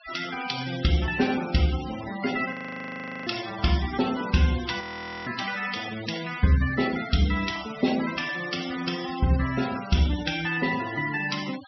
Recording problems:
treble cut off; nothing above 5.8 kHz
noise reduction artefacts; signal-to-artefact ratio 12 dB
audio freezing; at 2.5 s for 0.5 s and at 5 s

